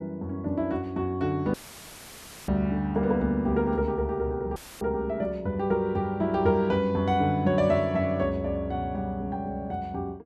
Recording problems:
dropout; at 1.5 s for 1 s and at 4.5 s; filled with static

